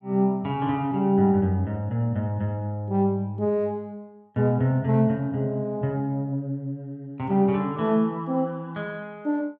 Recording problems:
none

